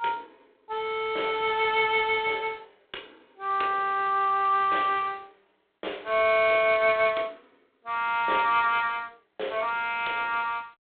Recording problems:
phone line; 320 Hz to 3.9 kHz, G.726

